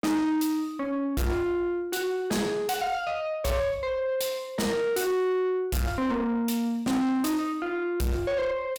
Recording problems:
distorted audio; soft clipping, signal-to-distortion ratio 7 dB

